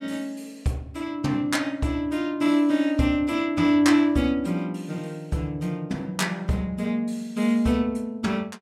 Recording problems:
none

